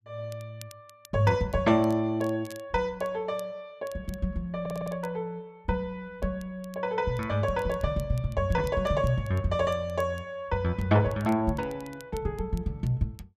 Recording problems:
crackling; vinyl, SNR 25 dB
audio stuttering; at 4.5 s

